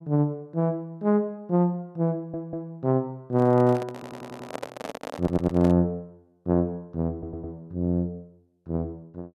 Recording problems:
stutter; 4 times, first at 2 s
handling noise; from 3.5 to 6 s; peak -3 dB vs average level

